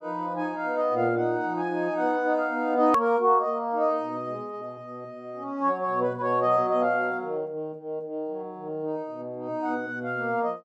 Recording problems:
hard cut with a click; at 3 s

